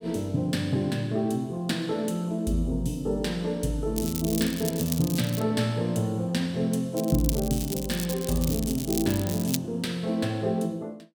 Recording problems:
crackle; from 4 to 5.5 s and from 7 to 9.5 s; loose cable, SNR 7 dB

